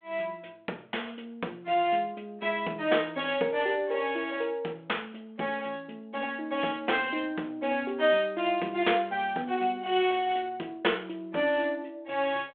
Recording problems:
telephone audio; 260 Hz to 3.5 kHz, G.726

